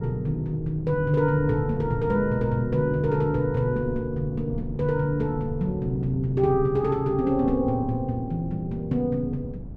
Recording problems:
wind on the microphone; below 190 Hz, SNR 11 dB

